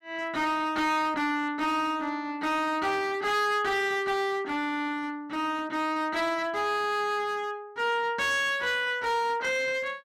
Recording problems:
distortion; hard clipping, uneven, signal-to-distortion ratio 7 dB

